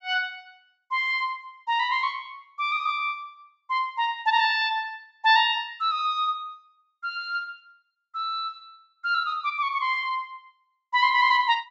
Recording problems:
treble missing; nothing above 8 kHz

